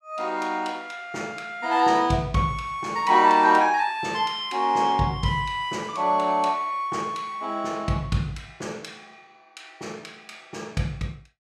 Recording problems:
none

